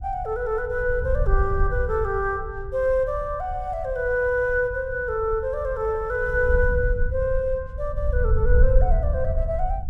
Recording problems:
wind noise; below 68 Hz, SNR 4 dB

